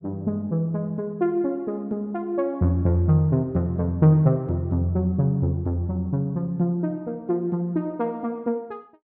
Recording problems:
none

